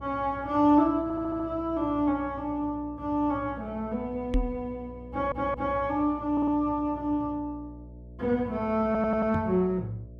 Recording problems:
hum; 60 Hz, harmonics up to 660 Hz, SNR 18 dB
stutter; 4 times, first at 1 s
knock on the microphone; at 4.5 s and at 9.5 s; peak +3 dB vs average level

